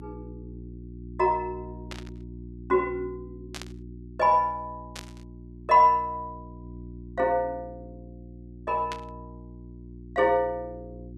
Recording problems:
hum; 60 Hz, harmonics up to 360 Hz, SNR 18 dB
burst of static; 4 times, first at 2 s; peak -8 dB vs average level

